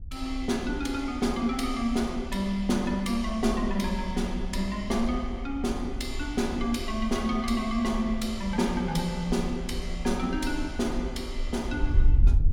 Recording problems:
wind noise; below 54 Hz, SNR 6 dB

